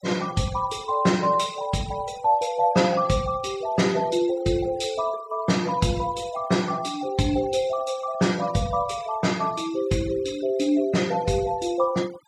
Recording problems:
noise reduction artefacts; signal-to-artefact ratio 20 dB

